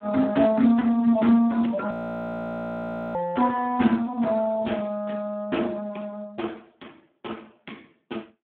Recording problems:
phone line; 170 Hz to 3.7 kHz, Speex
audio freezing; at 2 s for 1 s

